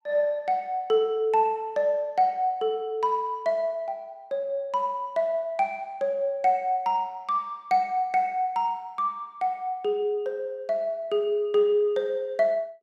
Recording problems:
none

